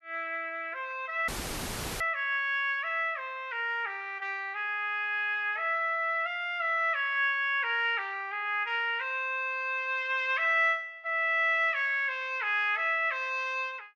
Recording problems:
dropout; at 1.5 s for 0.5 s; filled with static

